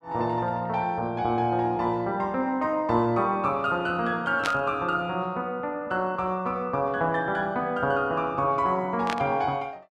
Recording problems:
burst of static; at 4.5 s and at 9 s; peak +1 dB vs average level

